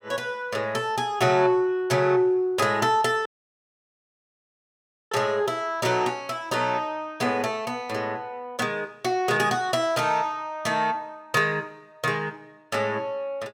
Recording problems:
dropout; at 3.5 s for 2 s

